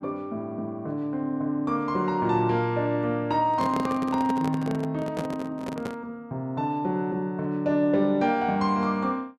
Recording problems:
microphone handling noise; from 3.5 to 6 s; peak -1 dB vs average level

